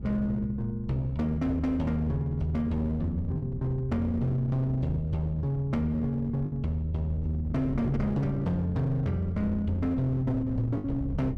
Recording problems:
distortion; hard clipping, signal-to-distortion ratio 11 dB
wind noise; below 160 Hz, SNR 11 dB
packet loss; 1.4% of the sound replaced, filled with the last packet

